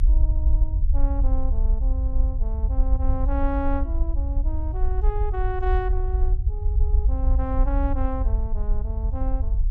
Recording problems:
rumble; below 58 Hz, SNR -8 dB

